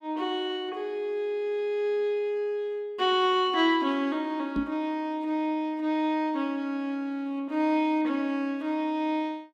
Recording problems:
knock on the microphone; at 4.5 s; peak +1 dB vs average level

